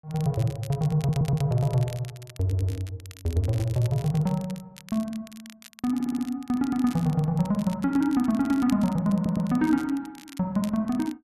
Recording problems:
crackling; vinyl, SNR 21 dB
audio stuttering; 4 times, first at 1 s

